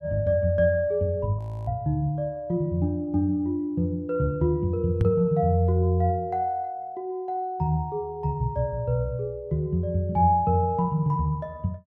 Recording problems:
frozen audio; at 1.5 s
knock on the microphone; at 5 s; peak +7 dB vs average level

